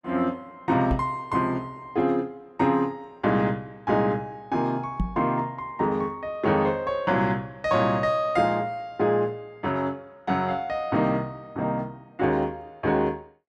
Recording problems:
microphone thump; at 1 s and at 5 s; peak +3 dB vs average level

